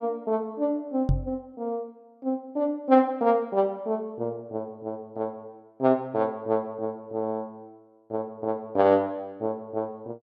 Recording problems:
knock on the microphone; at 1 s; peak +7 dB vs average level

